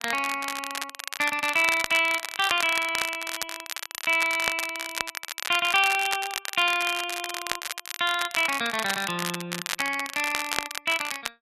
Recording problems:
crackling; vinyl, SNR 7 dB

